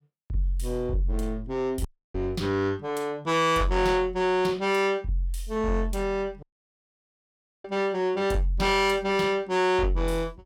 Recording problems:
distorted audio; soft clipping, signal-to-distortion ratio 12 dB
audio cutting out; at 2 s and at 6.5 s for 1 s

